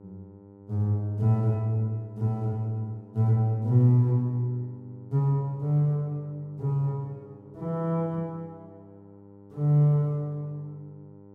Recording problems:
hum; 50 Hz, harmonics up to 1 kHz, SNR 23 dB

